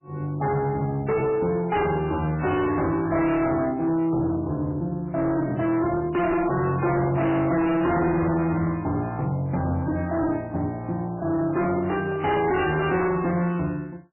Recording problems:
lossy codec; MP3, log-spectral distance 3 dB, nothing above 2.4 kHz
distorted audio; hard clipping, signal-to-distortion ratio 7 dB
handling noise; from 11 to 13 s; peak -10 dB vs average level

